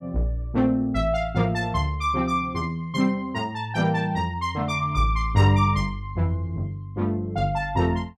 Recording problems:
none

